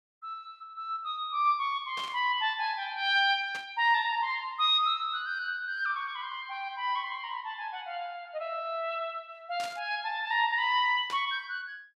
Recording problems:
burst of static; 4 times, first at 2 s; peak -8 dB vs average level

